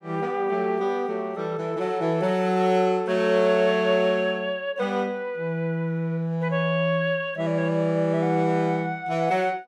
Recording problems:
none

